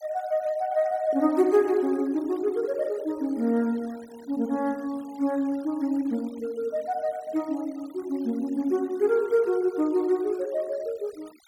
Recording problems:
denoising artefacts; signal-to-artefact ratio 24 dB

